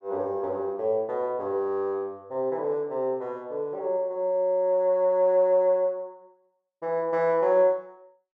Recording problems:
none

